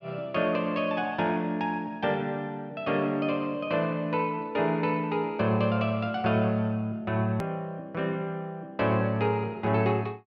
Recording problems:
click at an edit; at 7.5 s

